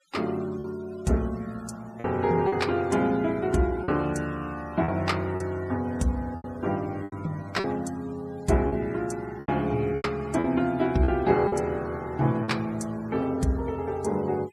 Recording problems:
denoising artefacts; signal-to-artefact ratio 23 dB
packet loss; 6% of the sound replaced, filled with repeated pitch periods

